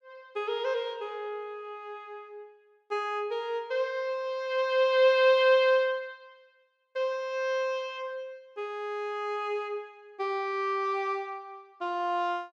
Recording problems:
none

